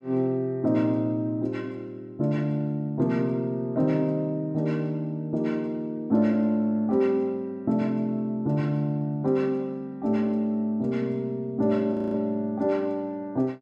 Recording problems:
audio freezing; at 12 s

